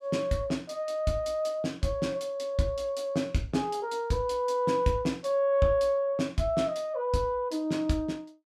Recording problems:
none

